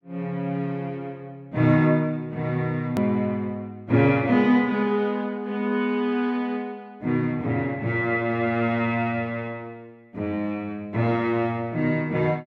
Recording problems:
hard cut with a click; at 3 s

